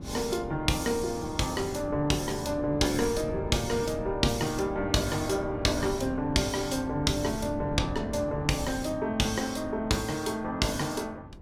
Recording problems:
wind on the microphone; below 280 Hz, SNR 11 dB

